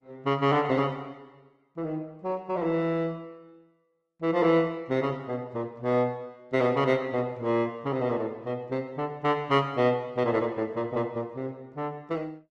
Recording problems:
lossy codec; Opus, log-spectral distance 2 dB, nothing above 11.6 kHz

